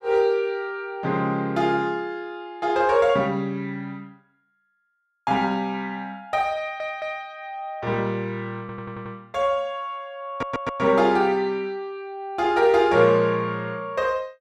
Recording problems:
audio stuttering; at 6.5 s, at 8.5 s and at 10 s

